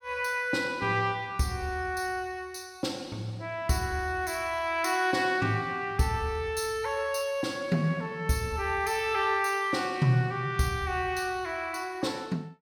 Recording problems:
none

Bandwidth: 17 kHz